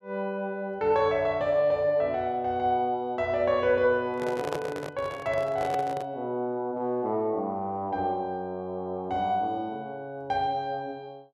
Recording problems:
microphone handling noise; from 4 to 6 s; peak -1 dB vs average level

